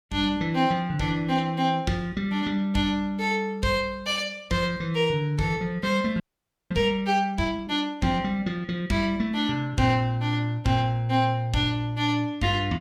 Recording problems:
frozen audio; at 6 s for 0.5 s

